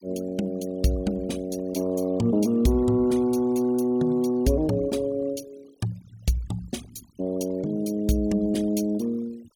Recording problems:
noise reduction artefacts; signal-to-artefact ratio 23 dB

